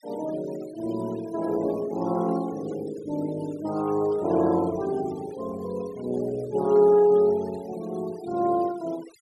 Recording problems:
denoising artefacts; signal-to-artefact ratio 22 dB

